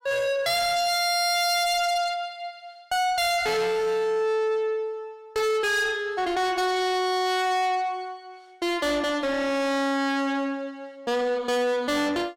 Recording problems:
distorted audio; soft clipping, signal-to-distortion ratio 6 dB

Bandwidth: 16.5 kHz